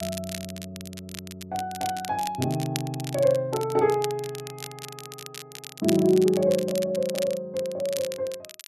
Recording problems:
crackling; vinyl, SNR 13 dB

